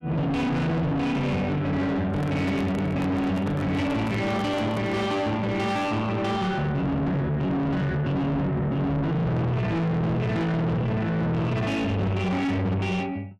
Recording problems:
distorted audio; soft clipping, signal-to-distortion ratio 6 dB
microphone handling noise; from 2 to 5 s; peak -4 dB vs average level

